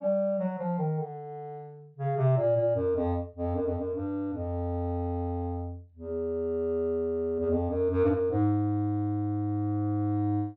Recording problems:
none

